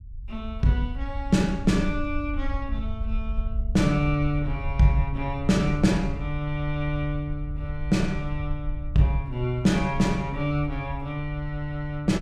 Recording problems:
low-frequency rumble; below 66 Hz, SNR 8 dB

